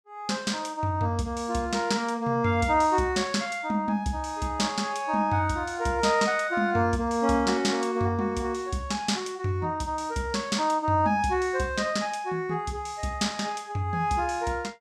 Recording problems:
none

